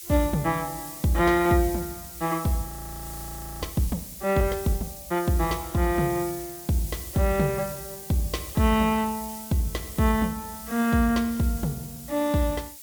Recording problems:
hiss; SNR 12 dB
audio freezing; at 2.5 s for 1 s

